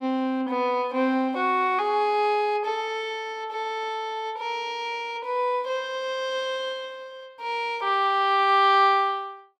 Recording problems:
none

